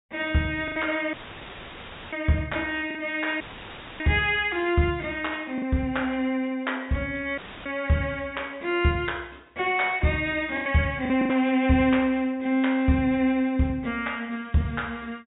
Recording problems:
treble cut off; nothing above 4 kHz
lost packets; 3% of the sound replaced, filled with the last packet
audio cutting out; at 1 s for 1 s, at 3.5 s for 0.5 s and at 7.5 s; filled with static

